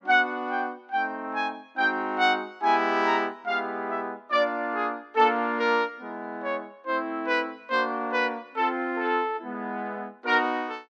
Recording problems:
none

